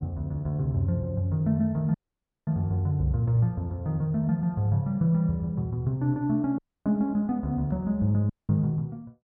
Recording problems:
audio cutting out; at 2 s for 0.5 s, at 6.5 s and at 8.5 s

